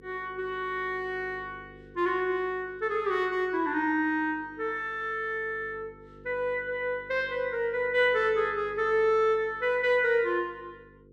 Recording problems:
hum; 50 Hz, harmonics up to 500 Hz, SNR 24 dB

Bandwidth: 14 kHz